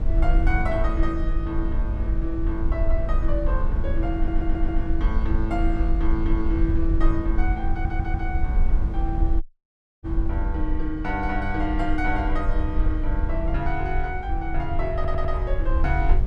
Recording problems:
low-frequency rumble; below 56 Hz, strongest tone 20 Hz, SNR -2 dB
audio stuttering; at 4 s, at 7.5 s and at 15 s
dropout; at 9.5 s for 0.5 s

